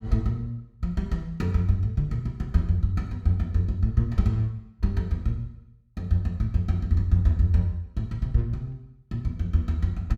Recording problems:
none

